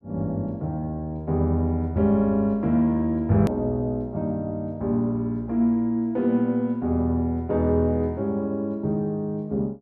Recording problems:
click at an edit; at 3.5 s

